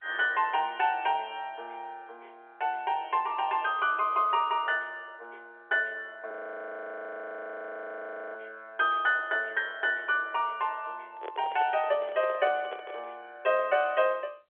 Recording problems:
phone line; 340 Hz to 3.5 kHz, G.711
audio freezing; at 6.5 s for 2 s
handling noise; from 11 to 13 s; peak -8 dB vs average level

